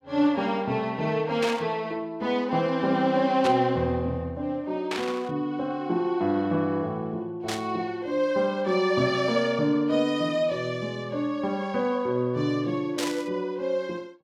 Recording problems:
burst of static; 5 times, first at 1.5 s; peak -1 dB vs average level

